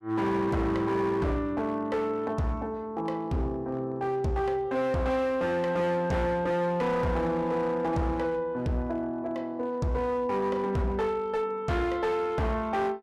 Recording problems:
distortion; hard clipping, uneven, signal-to-distortion ratio 10 dB

